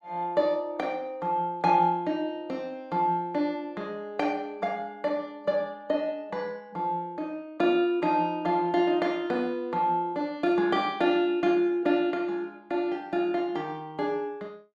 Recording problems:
none

